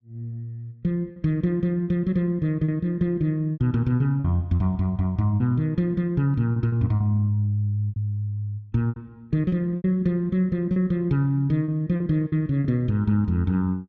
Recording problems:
lost packets; 7% of the sound replaced, filled with repeated pitch periods

